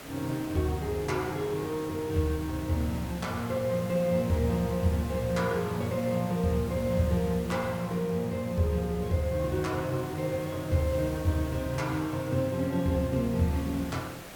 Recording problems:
background hiss; slope -4 dB per octave, SNR 15 dB

